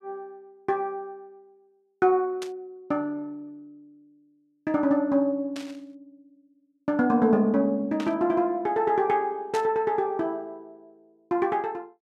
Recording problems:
burst of static; 4 times, first at 2.5 s; peak -7 dB vs average level

